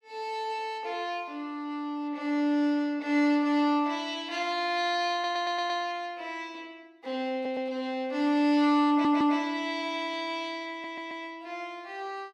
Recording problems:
stutter; 4 times, first at 5 s

